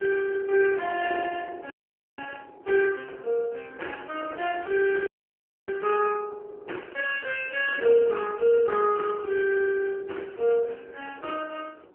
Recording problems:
telephone audio; 340 Hz to 3.1 kHz, AMR-NB
wind noise; below 590 Hz, SNR 21 dB
dropout; at 1.5 s and at 5 s for 0.5 s

